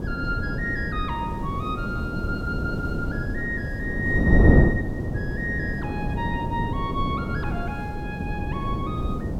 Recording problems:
background hiss; slope 0 dB per octave, SNR 26 dB
wind on the microphone; below 290 Hz, SNR -4 dB

